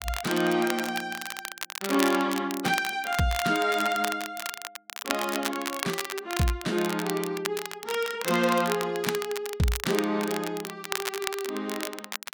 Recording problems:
crackling; vinyl, SNR 7 dB

